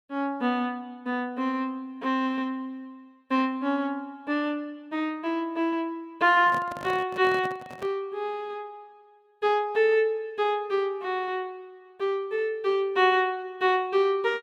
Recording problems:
microphone handling noise; from 6.5 to 8 s; peak -7 dB vs average level

